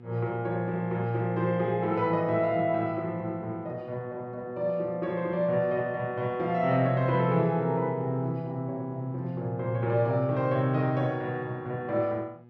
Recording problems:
hum; 60 Hz, harmonics up to 1.3 kHz, SNR 20 dB

